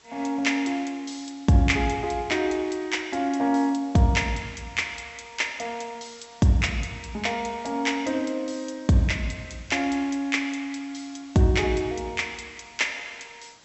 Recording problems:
treble missing; nothing above 7.8 kHz
background hiss; slope -1 dB per octave, SNR 27 dB

